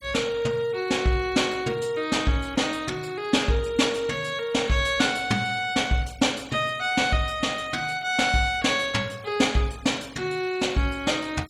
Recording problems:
denoising artefacts; signal-to-artefact ratio 22 dB

